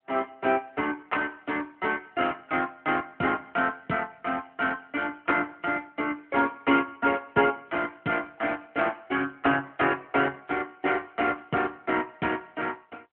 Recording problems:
phone line; 220 Hz to 3.3 kHz, AMR-NB

